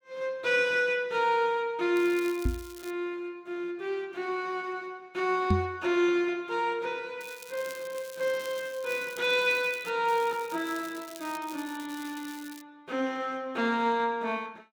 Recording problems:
crackling; at 2 s, from 7 to 10 s and from 10 to 13 s; loose cable, SNR 18 dB
microphone thump; at 2.5 s and at 5.5 s; peak +7 dB vs average level

